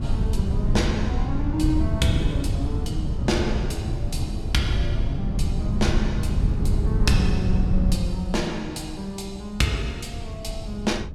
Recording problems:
wind on the microphone; below 120 Hz, SNR -2 dB

